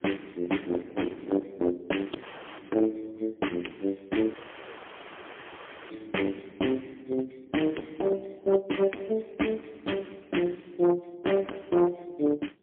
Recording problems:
phone line; 240 Hz to 3.3 kHz, AMR-NB, then MP3
distortion; hard clipping, signal-to-distortion ratio 10 dB
wind noise; below 610 Hz, SNR 19 dB
dropout; at 2 s and at 4.5 s for 1.5 s

